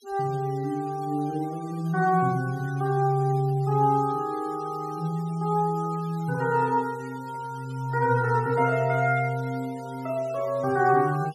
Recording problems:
denoising artefacts; signal-to-artefact ratio 24 dB

